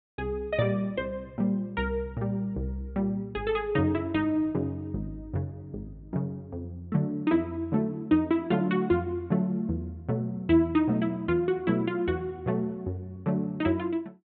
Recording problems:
treble missing; nothing above 4 kHz

